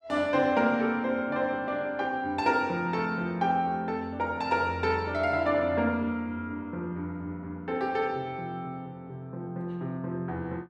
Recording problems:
none

